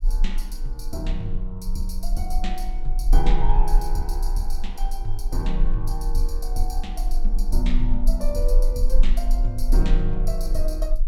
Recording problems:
rumble; below 34 Hz, strongest tone 18 Hz, SNR -5 dB

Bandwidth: 17 kHz